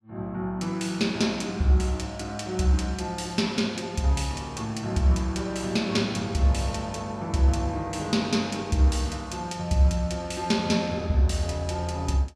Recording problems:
none

